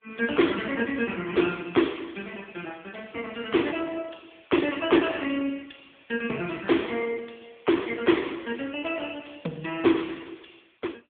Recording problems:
telephone audio; 190 Hz to 3.5 kHz, AMR-NB

